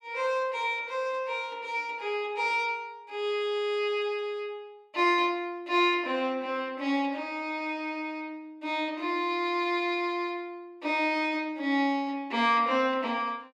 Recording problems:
none

